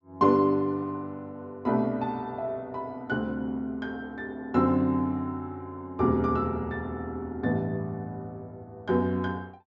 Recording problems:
treble missing; nothing above 8 kHz

